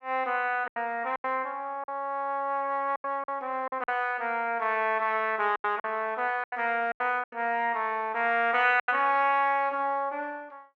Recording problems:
packet loss; 8% of the sound replaced, filled with silence

